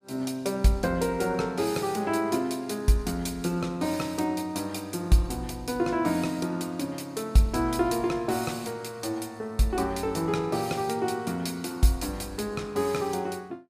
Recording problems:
none

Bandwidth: 15 kHz